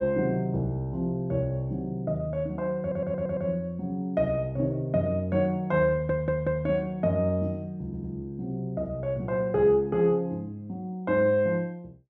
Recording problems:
stutter; at 3 s, at 6 s and at 8 s

